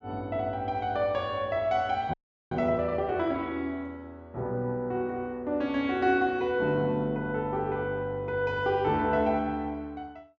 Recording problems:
low-pass filter; nothing above 8 kHz
audio freezing; at 2 s

